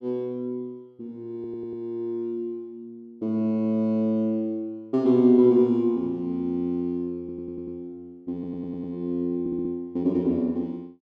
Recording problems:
stutter; 4 times, first at 1.5 s

